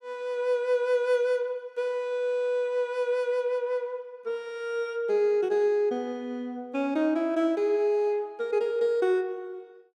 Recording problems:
none

